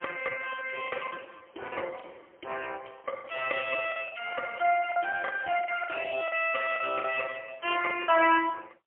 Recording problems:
phone line; 280 Hz to 3.1 kHz, AMR-NB, then MP3
packet loss; 7% of the sound replaced, filled with the last packet

